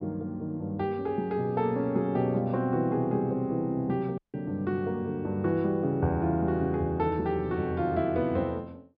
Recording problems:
treble cut off; nothing above 5.5 kHz
dropout; at 4 s

